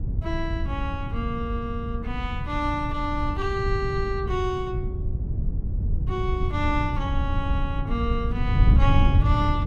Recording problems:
wind noise; below 110 Hz, SNR -2 dB

